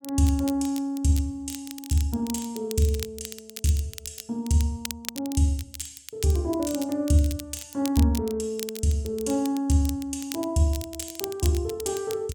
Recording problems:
crackling; vinyl, SNR 13 dB

